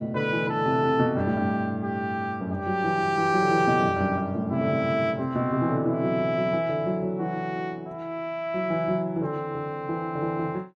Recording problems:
none

